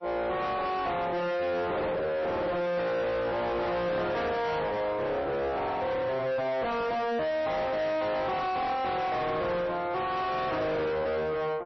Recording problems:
lossy codec; MP3, then AAC, log-spectral distance 2 dB, nothing above 5.8 kHz
distortion; soft clipping, signal-to-distortion ratio 5 dB

